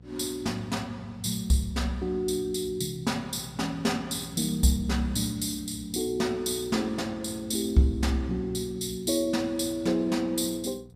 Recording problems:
hum; 60 Hz, harmonics up to 780 Hz, SNR 21 dB

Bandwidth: 15 kHz